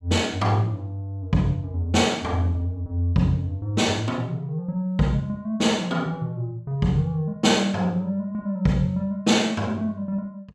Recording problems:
none

